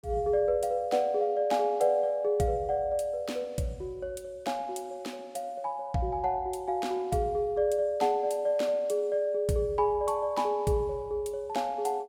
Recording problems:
none

